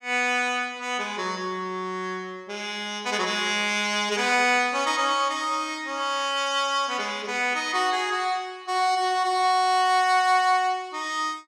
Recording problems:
none

